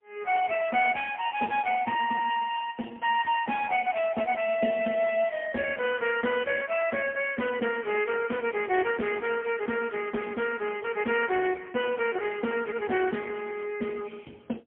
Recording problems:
phone line; 220 Hz to 3.3 kHz, AMR-NB, then MP3

